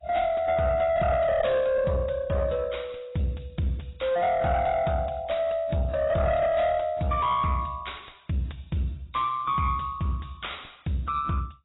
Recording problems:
codec artefacts; AAC, log-spectral distance 5 dB, nothing above 3.8 kHz
distorted audio; soft clipping, signal-to-distortion ratio 10 dB

